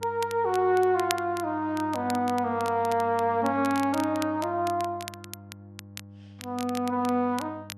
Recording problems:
hum; 50 Hz, harmonics up to 800 Hz, SNR 19 dB
crackling; vinyl, SNR 16 dB

